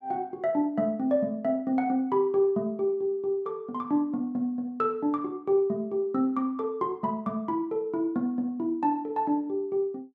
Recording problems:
none

